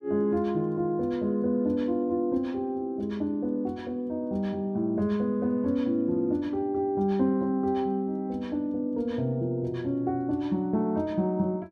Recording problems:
none

